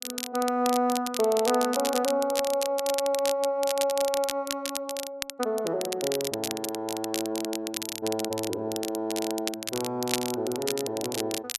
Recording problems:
crackling; vinyl, SNR 5 dB

